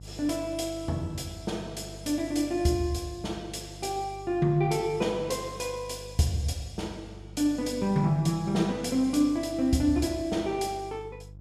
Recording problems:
hum; 50 Hz, harmonics up to 350 Hz, SNR 17 dB

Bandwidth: 14.5 kHz